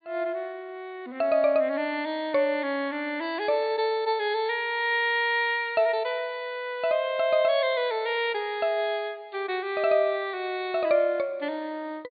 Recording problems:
treble missing; nothing above 4.7 kHz

